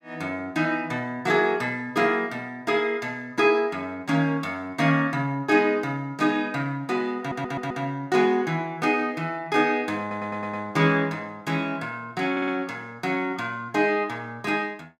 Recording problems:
stutter; at 7 s, at 10 s and at 12 s

